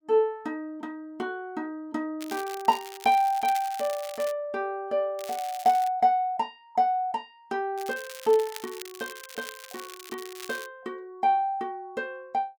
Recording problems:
crackle; from 2 to 4.5 s, at 5 s and from 8 to 11 s; loose cable, SNR 15 dB

